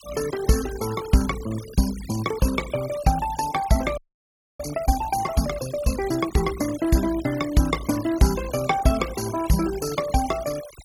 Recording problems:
noise reduction artefacts; signal-to-artefact ratio 14 dB
audio freezing; at 4 s for 0.5 s

